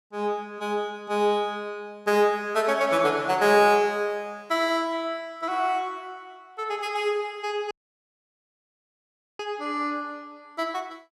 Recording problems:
audio cutting out; at 7.5 s for 1.5 s

